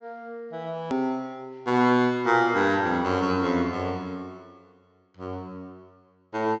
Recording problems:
low-pass filter; nothing above 8 kHz
hard cut with a click; at 1 s

